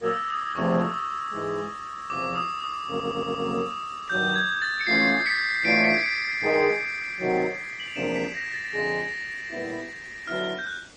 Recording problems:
codec artefacts; MP3, then Opus, log-spectral distance 5 dB, nothing above 8 kHz
background hiss; SNR 25 dB
stutter; at 3 s

